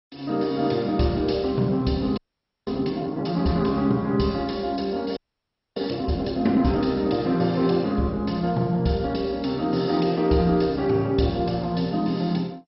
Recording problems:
lossy codec; MP2, log-spectral distance 5 dB, nothing above 5.5 kHz
frozen audio; at 2 s and at 5 s for 0.5 s

